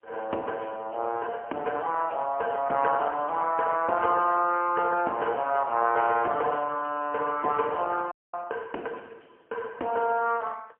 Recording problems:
phone line; 300 Hz to 3 kHz, AMR-NB, then MP3
frozen audio; at 8 s

